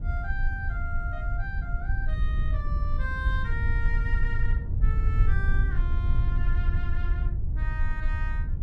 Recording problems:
low-frequency rumble; below 70 Hz, SNR -9 dB

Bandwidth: 14.5 kHz